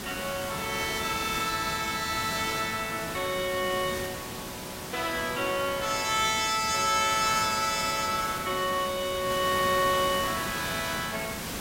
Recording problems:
background hiss; slope -2 dB per octave, SNR 8 dB

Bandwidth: 16 kHz